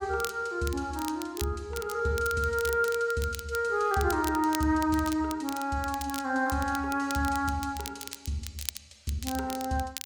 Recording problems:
crackle; vinyl, SNR 12 dB

